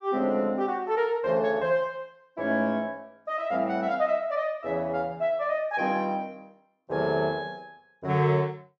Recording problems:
none

